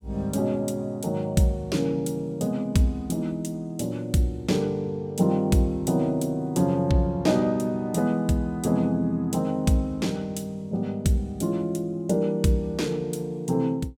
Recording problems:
none

